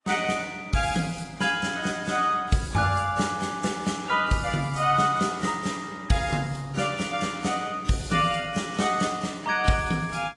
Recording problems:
codec artefacts; AAC, then AAC, log-spectral distance 4 dB

